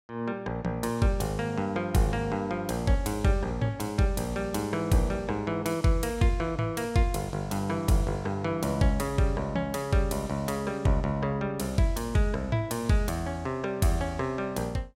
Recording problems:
none

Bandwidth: 16 kHz